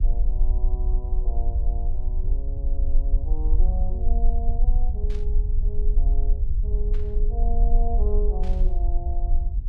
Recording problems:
hum; 50 Hz, harmonics up to 400 Hz, SNR 21 dB
rumble; below 44 Hz, strongest tone 22 Hz, SNR -13 dB
static burst; at 5 s, at 7 s and at 8.5 s; peak -6 dB vs average level

